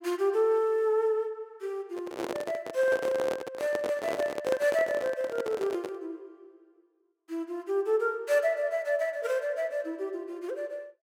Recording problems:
handling noise; from 2 to 6 s; peak +1 dB vs average level

